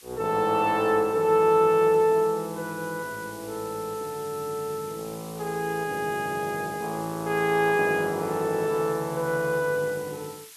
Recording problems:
hiss; slope +4 dB per octave, SNR 19 dB

